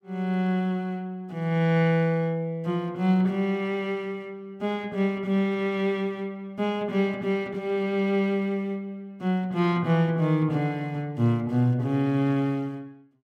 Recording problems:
none

